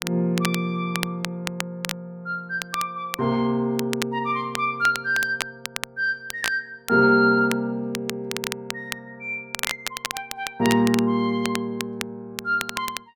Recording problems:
crackle; vinyl, SNR 8 dB

